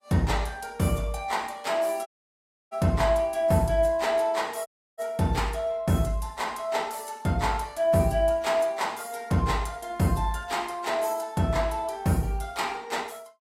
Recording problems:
lossy compression; AAC, log-spectral distance 3 dB, nothing above 15.1 kHz
audio cutting out; at 2 s for 0.5 s and at 4.5 s

